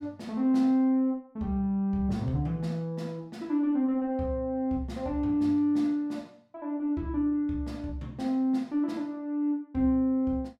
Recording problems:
none

